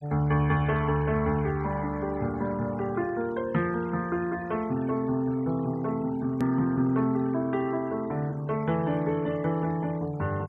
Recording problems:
noise reduction artefacts; signal-to-artefact ratio 22 dB
hard cut with a click; at 6.5 s

